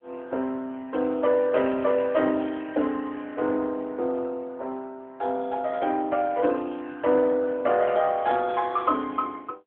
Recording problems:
telephone audio; 220 Hz to 3.6 kHz, AMR-NB

